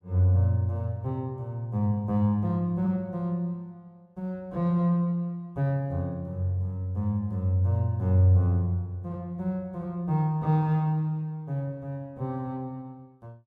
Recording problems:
none

